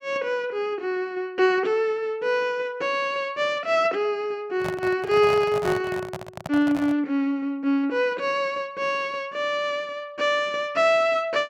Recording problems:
microphone handling noise; from 4.5 to 7 s; peak -3 dB vs average level

